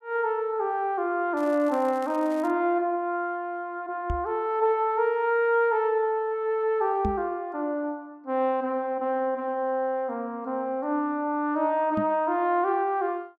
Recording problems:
crackle; from 1.5 to 2.5 s; loose cable, SNR 26 dB
microphone bump; at 4 s, at 7 s and at 12 s; peak 0 dB vs average level

